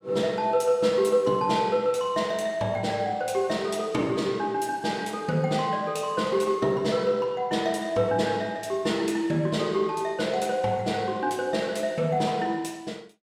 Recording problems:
none

